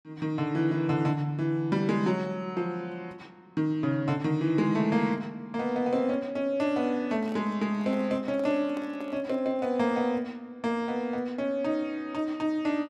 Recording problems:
microphone handling noise; from 7 to 10 s; peak -11 dB vs average level

